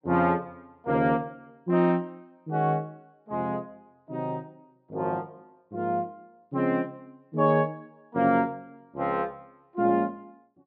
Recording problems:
treble missing; nothing above 5.5 kHz

